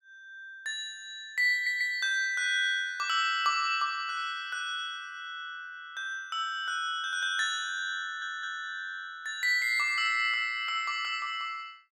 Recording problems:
stutter; at 1.5 s and at 8 s

